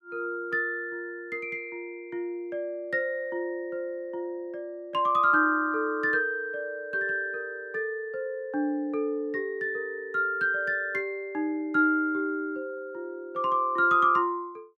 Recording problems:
none

